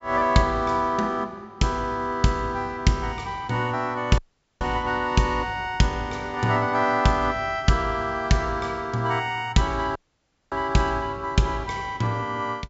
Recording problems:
treble cut off; nothing above 8 kHz
dropout; at 4 s and at 10 s for 0.5 s

